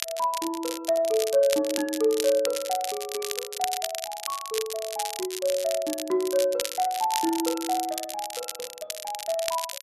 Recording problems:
crackle; vinyl, SNR 6 dB

